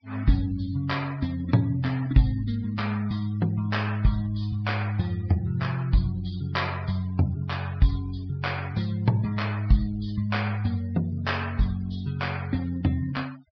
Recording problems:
treble missing; nothing above 5.5 kHz
denoising artefacts; signal-to-artefact ratio 22 dB

